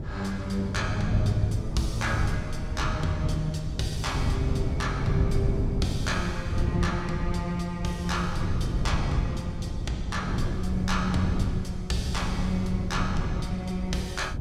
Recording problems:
wind noise; below 150 Hz, SNR 0 dB

